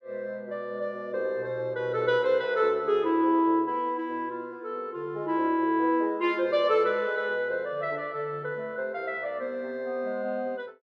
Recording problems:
none

